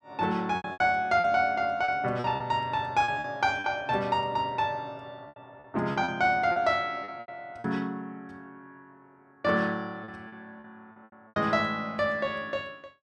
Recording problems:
lost packets; 9% of the sound replaced, filled with repeated pitch periods

